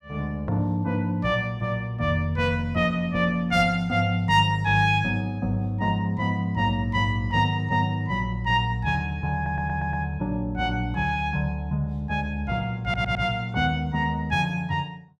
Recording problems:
stutter; at 9.5 s and at 13 s

